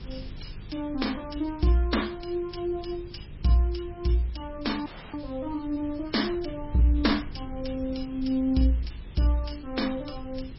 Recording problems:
codec artefacts; MP3, log-spectral distance 9 dB, nothing above 5.5 kHz
hum; 50 Hz, harmonics up to 500 Hz, SNR 21 dB
hiss; SNR 25 dB
rumble; below 90 Hz, SNR 16 dB
dropout; at 5 s

